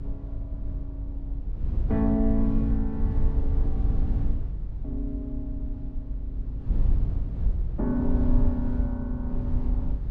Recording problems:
rumble; below 68 Hz, SNR -1 dB

